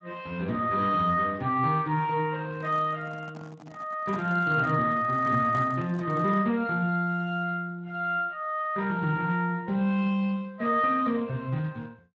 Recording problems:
codec artefacts; Speex, log-spectral distance 2 dB
microphone handling noise; from 2.5 to 6.5 s; peak -11 dB vs average level

